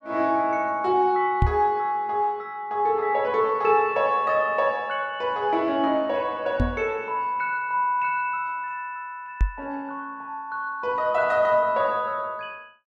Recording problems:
microphone bump; at 1.5 s, at 6.5 s and at 9.5 s; peak +6 dB vs average level

